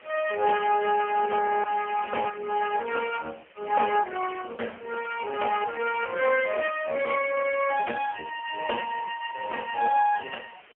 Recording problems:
telephone audio; 300 Hz to 2.8 kHz, AMR-NB, then MP3
hiss; SNR 27 dB
audio freezing; at 1.5 s

